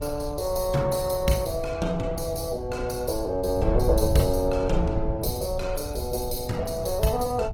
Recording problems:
codec artefacts; Opus, log-spectral distance 5 dB, nothing above 17 kHz
wind on the microphone; below 90 Hz, SNR 7 dB

